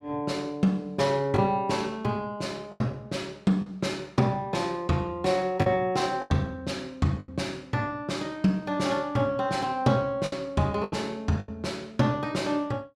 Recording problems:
packet loss; 4% of the sound replaced, filled with the last packet

